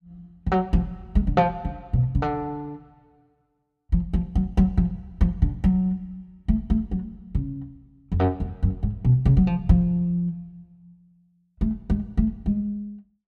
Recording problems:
none

